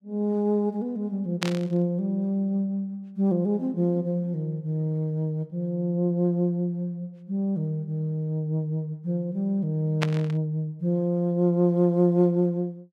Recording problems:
static burst; at 1.5 s and at 10 s; peak +2 dB vs average level

